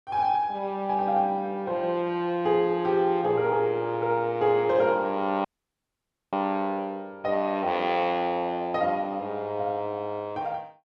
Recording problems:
audio cutting out; at 5.5 s for 1 s

